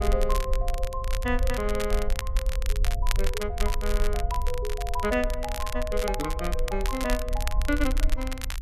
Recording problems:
rumble; below 50 Hz, SNR 0 dB
crackling; vinyl, SNR 7 dB

